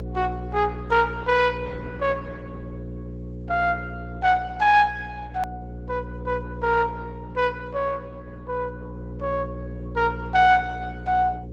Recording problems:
lossy codec; Opus, log-spectral distance 2 dB
hum; 60 Hz, harmonics up to 540 Hz, SNR 12 dB
click at an edit; at 5.5 s

